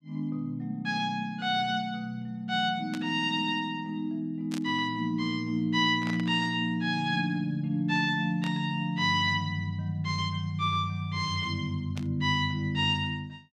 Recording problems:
static burst; 5 times, first at 3 s; peak -7 dB vs average level

